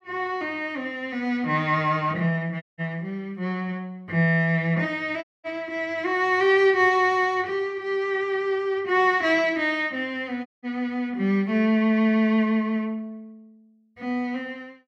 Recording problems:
dropout; at 2.5 s, at 5 s and at 10 s

